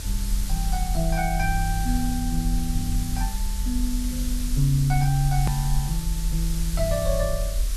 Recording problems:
hum; 60 Hz, harmonics up to 660 Hz, SNR 27 dB
background hiss; SNR 8 dB
rumble; below 44 Hz, strongest tone 42 Hz, SNR 2 dB
click at an edit; at 5.5 s

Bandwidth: 13 kHz